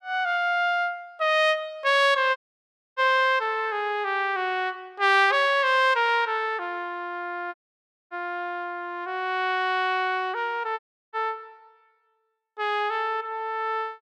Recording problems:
dropout; at 2.5 s for 0.5 s, at 7.5 s for 0.5 s and at 11 s

